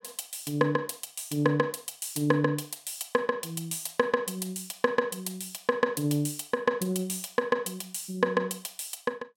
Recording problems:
none

